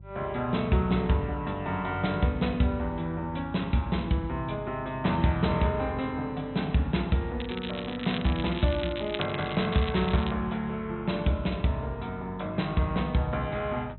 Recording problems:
low-pass filter; nothing above 4 kHz
hum; 50 Hz, harmonics up to 350 Hz, SNR 18 dB
crackling; from 7.5 to 10 s; loose cable, SNR 10 dB

